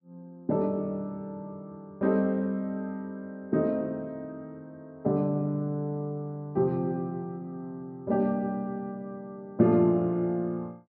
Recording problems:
treble cut off; nothing above 5.3 kHz

